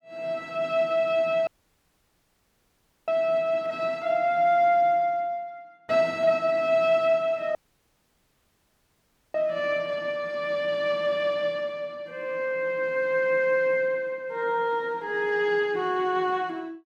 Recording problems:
dropout; at 1.5 s for 1.5 s and at 7.5 s for 2 s

